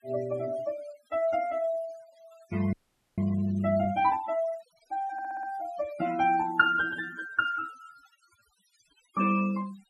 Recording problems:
noise reduction artefacts; signal-to-artefact ratio 19 dB
frozen audio; at 2.5 s
audio stuttering; at 5 s

